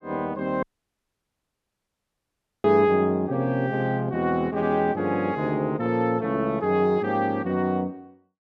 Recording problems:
audio cutting out; at 0.5 s for 2 s

